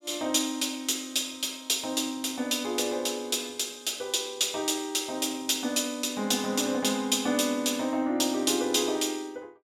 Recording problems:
none

